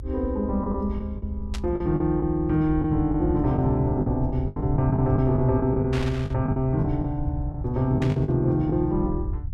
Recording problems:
low-frequency rumble; below 76 Hz, SNR 8 dB
packet loss; 9% of the sound replaced, filled with the last packet
burst of static; at 1.5 s, at 6 s and at 8 s; peak -7 dB vs average level

